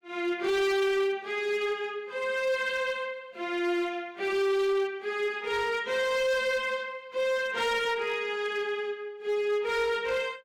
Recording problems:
distorted audio; hard clipping, uneven, signal-to-distortion ratio 11 dB

